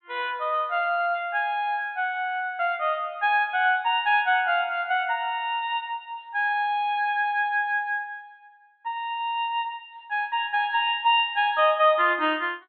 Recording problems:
low-pass filter; nothing above 4.1 kHz

